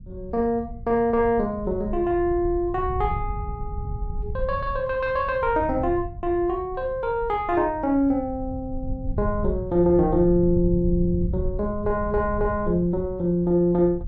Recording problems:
rumble; below 94 Hz, SNR 10 dB

